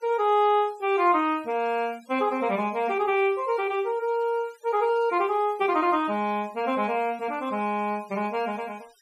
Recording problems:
denoising artefacts; signal-to-artefact ratio 27 dB

